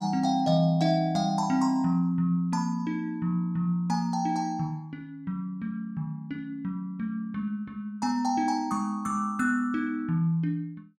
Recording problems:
none

